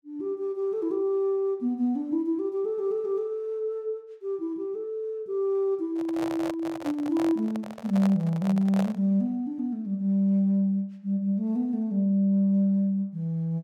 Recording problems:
handling noise; from 6 to 9 s; peak -3 dB vs average level

